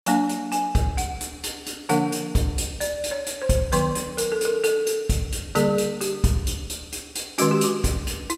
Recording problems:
none

